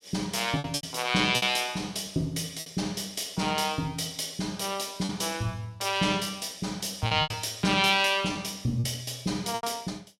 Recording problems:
lost packets; 6% of the sound replaced, filled with repeated pitch periods

